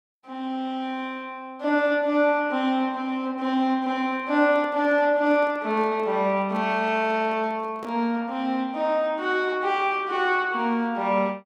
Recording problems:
handling noise; from 4 to 8 s; peak -10 dB vs average level

